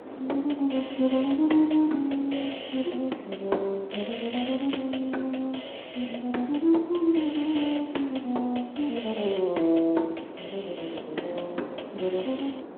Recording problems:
telephone audio; 220 Hz to 3.5 kHz, Speex
wind on the microphone; below 600 Hz, SNR 15 dB
crackle; at 4 s; loose cable, SNR 15 dB

